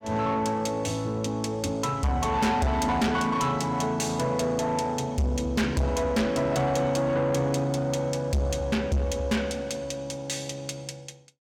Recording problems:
distorted audio; soft clipping, signal-to-distortion ratio 7 dB

